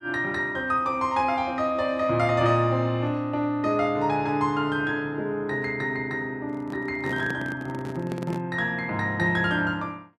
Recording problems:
microphone handling noise; from 6.5 to 8.5 s; peak -5 dB vs average level

